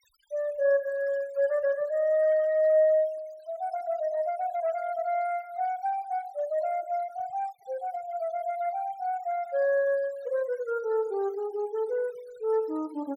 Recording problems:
denoising artefacts; signal-to-artefact ratio 24 dB

